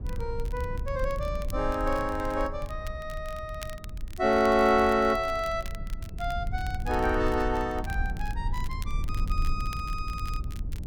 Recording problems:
low-frequency rumble; below 72 Hz, SNR 7 dB
crackling; vinyl, SNR 21 dB

